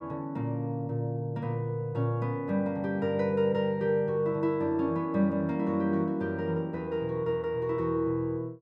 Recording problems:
none

